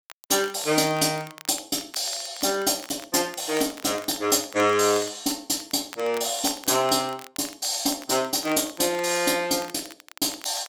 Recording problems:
crackle; vinyl, SNR 20 dB

